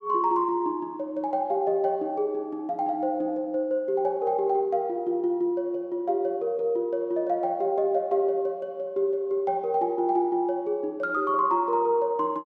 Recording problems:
none

